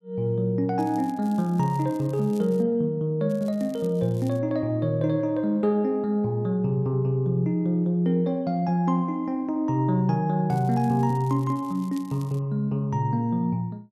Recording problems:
crackle; from 1 to 2.5 s, from 3.5 to 4.5 s and from 11 to 12 s; loose cable, SNR 27 dB

